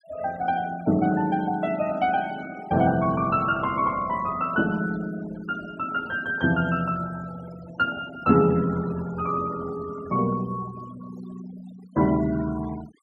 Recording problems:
noise reduction artefacts; signal-to-artefact ratio 20 dB

